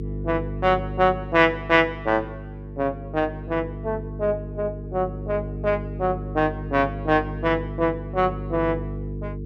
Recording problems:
hum; 50 Hz, harmonics up to 450 Hz, SNR 9 dB

